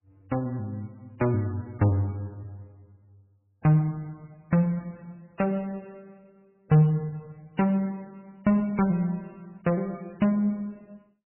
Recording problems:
codec artefacts; MP3, log-spectral distance 2 dB, nothing above 2.9 kHz

